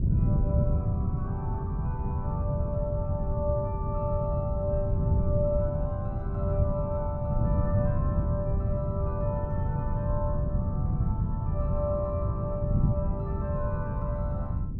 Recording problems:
wind noise; below 150 Hz, SNR -6 dB

